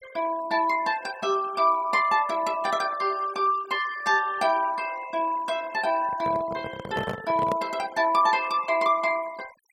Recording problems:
denoising artefacts; signal-to-artefact ratio 19 dB
microphone handling noise; from 6 to 7.5 s; peak -2 dB vs average level

